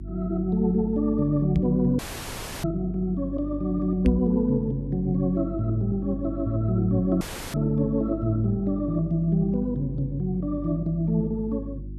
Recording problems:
hum; 50 Hz, harmonics up to 350 Hz, SNR 11 dB
microphone thump; at 1.5 s and at 4 s; peak +6 dB vs average level
audio cutting out; at 2 s for 0.5 s and at 7 s

